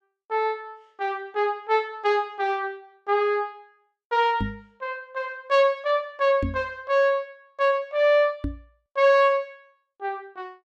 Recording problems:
microphone bump; at 4.5 s, at 6.5 s and at 8.5 s; peak 0 dB vs average level

